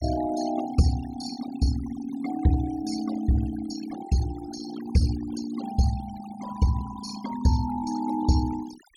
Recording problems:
noise reduction artefacts; signal-to-artefact ratio 13 dB

